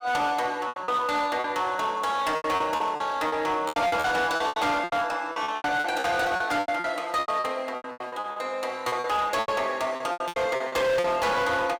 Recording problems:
distortion; hard clipping, signal-to-distortion ratio 10 dB
packet loss; 17% of the sound replaced, filled with repeated pitch periods

